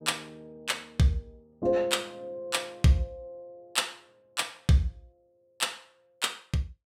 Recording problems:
none

